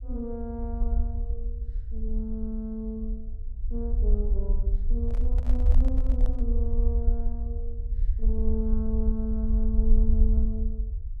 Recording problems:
rumble; below 56 Hz, SNR -7 dB
microphone handling noise; from 5 to 6.5 s; peak -5 dB vs average level

